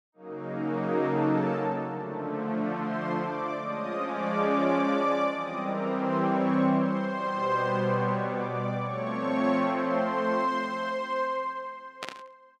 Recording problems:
burst of static; at 12 s; peak -3 dB vs average level

